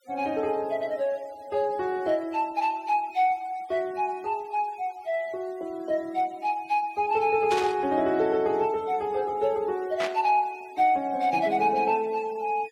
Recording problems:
denoising artefacts; signal-to-artefact ratio 25 dB
burst of static; at 7.5 s and at 10 s; peak -2 dB vs average level

